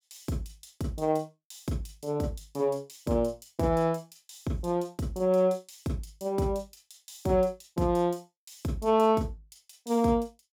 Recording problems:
none

